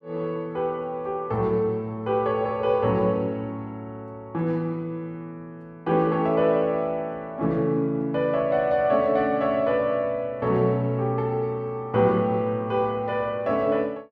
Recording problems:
none

